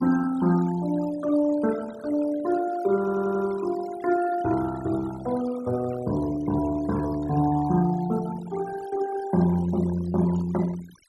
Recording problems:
noise reduction artefacts; signal-to-artefact ratio 17 dB
audio stuttering; at 3 s

